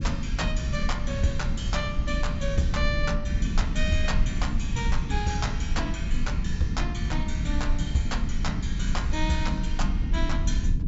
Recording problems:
treble cut off; nothing above 8 kHz
low-frequency rumble; below 76 Hz, SNR -2 dB

